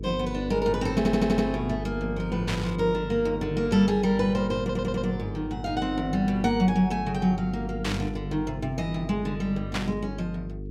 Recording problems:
electrical hum; 50 Hz, harmonics up to 450 Hz, SNR 9 dB
stutter; at 1 s and at 4.5 s
burst of static; at 2.5 s, at 8 s and at 9.5 s; peak +1 dB vs average level

